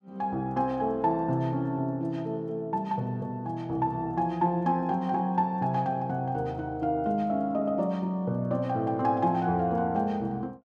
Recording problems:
none

